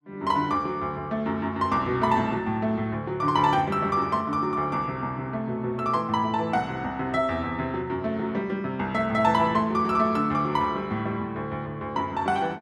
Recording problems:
none

